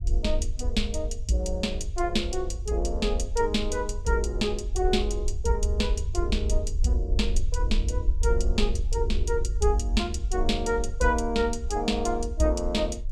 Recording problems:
rumble; below 62 Hz, SNR 3 dB

